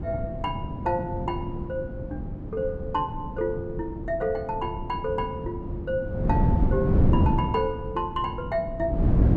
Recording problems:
wind on the microphone; below 210 Hz, SNR -1 dB

